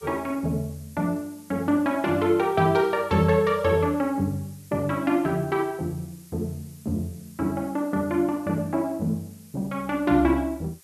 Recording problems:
hiss; SNR 25 dB

